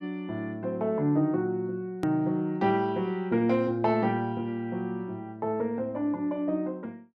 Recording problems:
click at an edit; at 2 s

